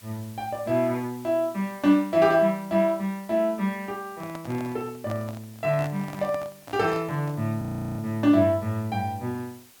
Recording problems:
hiss; slope 0 dB per octave, SNR 24 dB
microphone handling noise; from 4 to 7.5 s; peak -7 dB vs average level
frozen audio; at 7.5 s

